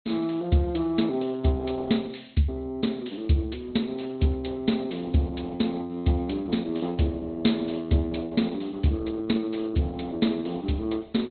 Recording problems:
low-pass filter; nothing above 4.2 kHz
lossy codec; Opus, log-spectral distance 4 dB

